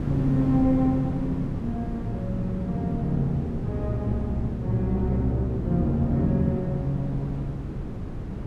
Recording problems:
wind on the microphone; below 260 Hz, SNR 7 dB

